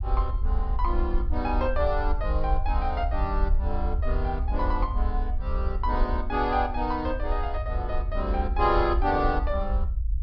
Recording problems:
low-pass filter; nothing above 5.5 kHz
low-frequency rumble; below 62 Hz, SNR 1 dB

